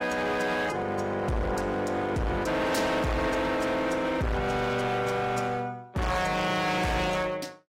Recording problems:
lossy compression; AAC, log-spectral distance 3 dB, nothing above 16.5 kHz
distortion; hard clipping, signal-to-distortion ratio 6 dB

